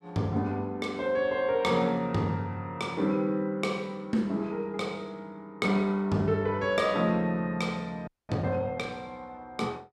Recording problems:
frozen audio; at 8 s

